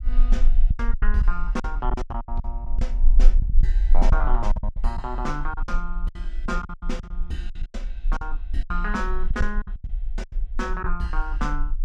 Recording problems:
rumble; below 34 Hz, strongest tone 24 Hz, SNR -5 dB
lost packets; 15% of the sound replaced, filled with silence

